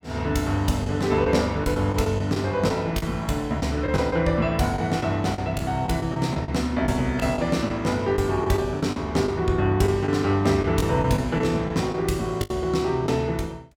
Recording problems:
packet loss; 7% of the sound replaced, filled with the last packet

